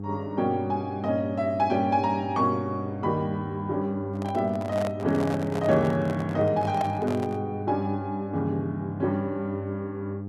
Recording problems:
mains hum; 50 Hz, harmonics up to 800 Hz, SNR 8 dB
microphone handling noise; from 4 to 7.5 s; peak -1 dB vs average level

